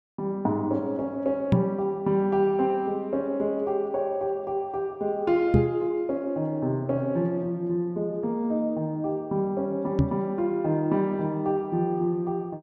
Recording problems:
knock on the microphone; at 1.5 s, at 5.5 s and at 10 s; peak +9 dB vs average level

